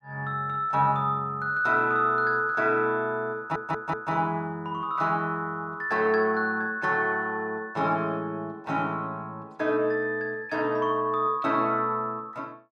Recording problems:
stutter; at 3.5 s

